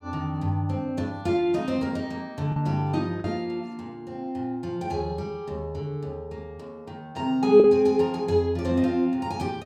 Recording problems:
lost packets; 1.2% of the sound replaced, filled with the last packet

